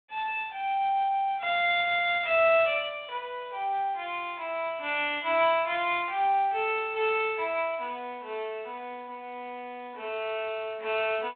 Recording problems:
phone line; 260 Hz to 3.6 kHz, G.726

